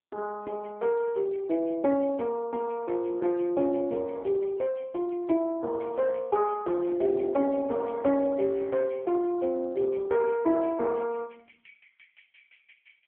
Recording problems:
telephone audio; 240 Hz to 3.2 kHz, AMR-NB

